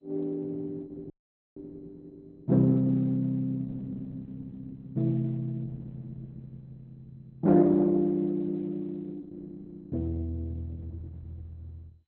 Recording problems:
codec artefacts; Opus, then MP2, log-spectral distance 2 dB, nothing above 3.7 kHz
audio cutting out; at 1 s

